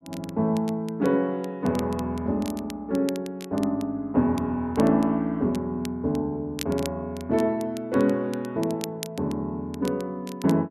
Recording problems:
crackle; vinyl, SNR 18 dB

